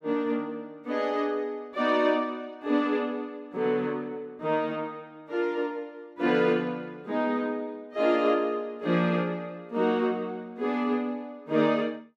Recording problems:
none

